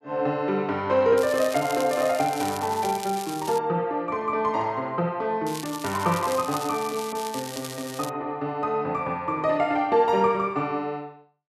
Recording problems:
crackle; from 1 to 3.5 s and from 5.5 to 8 s; loose cable, SNR 12 dB

